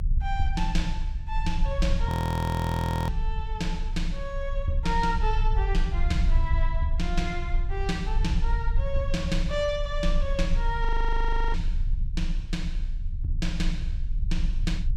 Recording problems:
low-frequency rumble; below 58 Hz, strongest tone 28 Hz, SNR -2 dB
audio freezing; at 2 s for 1 s and at 11 s for 0.5 s

